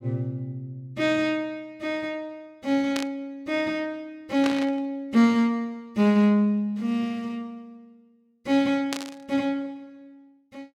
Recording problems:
burst of static; at 3 s, at 4.5 s and at 9 s; peak -1 dB vs average level

